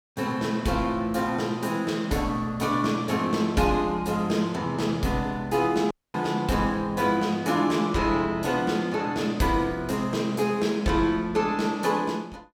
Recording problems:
audio cutting out; at 6 s

